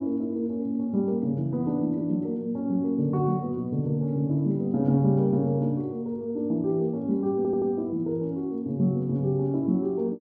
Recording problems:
audio stuttering; at 7.5 s

